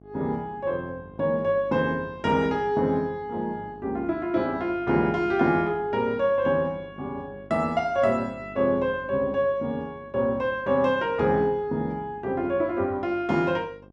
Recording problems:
hum; 50 Hz, harmonics up to 1.1 kHz, SNR 23 dB

